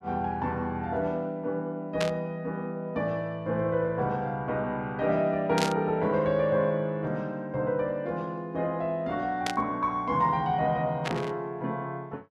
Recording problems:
static burst; 4 times, first at 2 s; peak +3 dB vs average level

